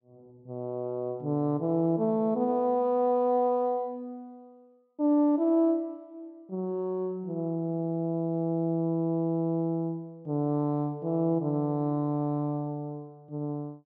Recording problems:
none

